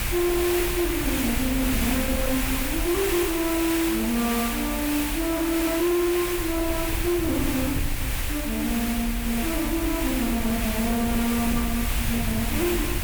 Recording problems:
distortion; soft clipping, signal-to-distortion ratio 10 dB
background hiss; SNR 3 dB
rumble; below 96 Hz, SNR 6 dB

